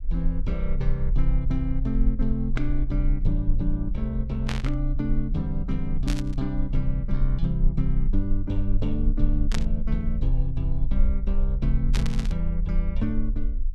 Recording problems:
rumble; below 40 Hz, strongest tone 22 Hz, SNR 0 dB
burst of static; 4 times, first at 4.5 s; peak +2 dB vs average level

